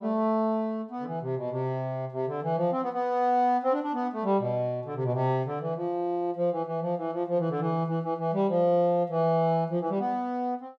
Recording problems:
none

